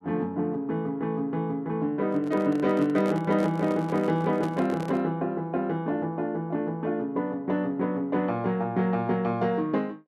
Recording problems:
handling noise; from 2 to 5 s; peak -6 dB vs average level

